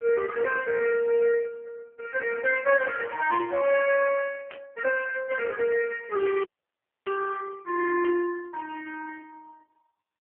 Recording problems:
telephone audio; 320 Hz to 2.7 kHz, AMR-NB
burst of static; at 4.5 s and at 8 s; peak -14 dB vs average level
audio cutting out; at 6.5 s for 0.5 s

